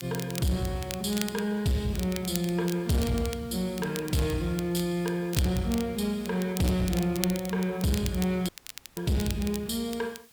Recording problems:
distortion; soft clipping, signal-to-distortion ratio 10 dB
hiss; slope +1 dB per octave, SNR 26 dB
crackle; vinyl, SNR 11 dB
dropout; at 8.5 s

